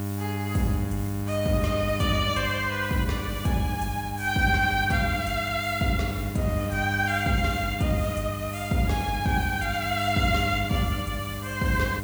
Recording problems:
electrical hum; 50 Hz, harmonics up to 1.4 kHz, SNR 7 dB
hiss; slope +1 dB per octave, SNR 16 dB

